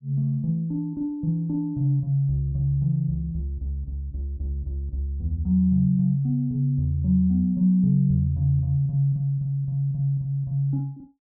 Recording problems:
none

